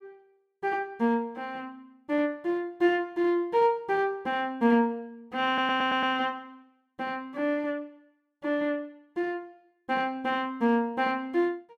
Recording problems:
audio stuttering; at 5.5 s

